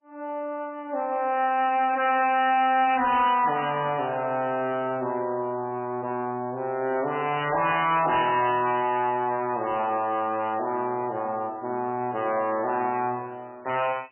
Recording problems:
codec artefacts; MP3, log-spectral distance 3 dB, nothing above 2.4 kHz
distorted audio; soft clipping, signal-to-distortion ratio 11 dB
burst of static; at 8 s; peak -13 dB vs average level

